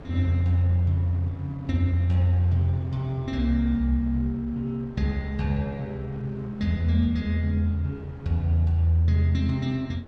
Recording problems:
wind on the microphone; below 510 Hz, SNR 21 dB

